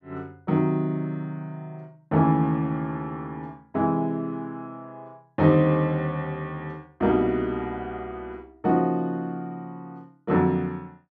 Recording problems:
none

